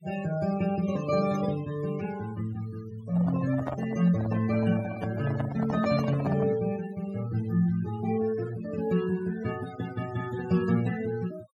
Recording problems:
denoising artefacts; signal-to-artefact ratio 16 dB
handling noise; from 3 to 6.5 s; peak -2 dB vs average level

